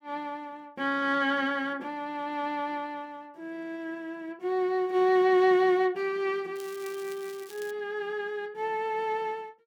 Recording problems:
crackle; from 6.5 to 7.5 s; loose cable, SNR 20 dB

